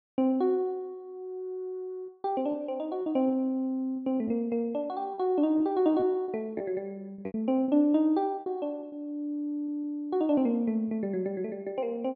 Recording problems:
lost packets; 6% of the sound replaced, filled with repeated pitch periods

